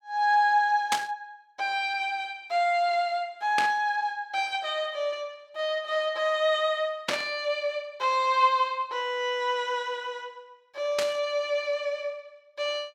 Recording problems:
burst of static; 4 times, first at 1 s; peak +4 dB vs average level

